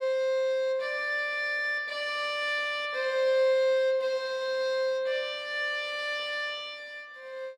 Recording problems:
none

